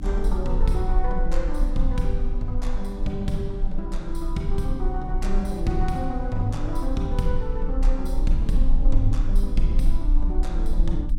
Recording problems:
hum; 60 Hz, harmonics up to 300 Hz, SNR 8 dB
rumble; below 38 Hz, strongest tone 20 Hz, SNR -1 dB

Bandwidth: 17 kHz